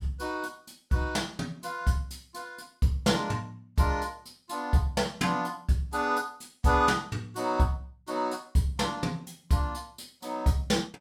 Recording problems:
none

